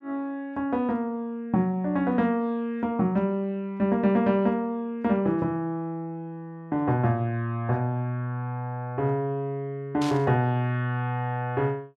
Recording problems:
burst of static; at 10 s; peak -6 dB vs average level

